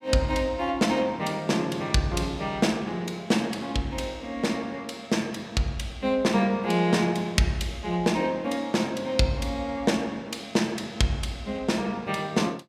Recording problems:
none

